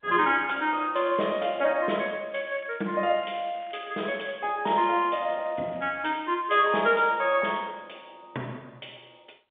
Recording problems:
phone line; 220 Hz to 3.5 kHz, G.711
crackle; from 0.5 to 2 s, from 2.5 to 4 s and at 5 s; loose cable, SNR 27 dB

